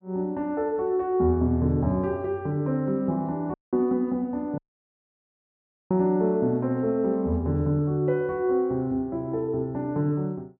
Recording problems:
dropout; at 3.5 s and at 4.5 s for 1.5 s

